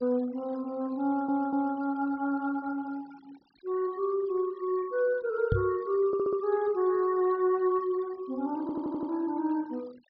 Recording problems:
treble cut off; nothing above 5.5 kHz
denoising artefacts; signal-to-artefact ratio 26 dB
audio stuttering; at 1 s, at 6 s and at 8.5 s
microphone bump; at 5.5 s; peak +4 dB vs average level

